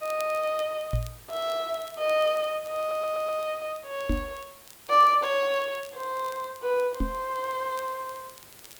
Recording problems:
background hiss; slope -2 dB per octave, SNR 21 dB
crackling; vinyl, SNR 25 dB
knock on the microphone; at 1 s, at 4 s and at 7 s; peak +3 dB vs average level
stutter; at 3 s

